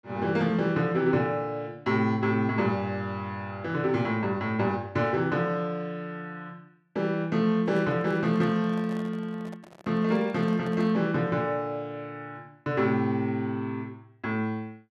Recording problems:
handling noise; from 7.5 to 11 s; peak -13 dB vs average level

